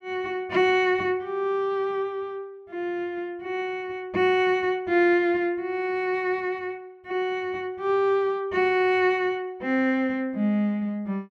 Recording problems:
none

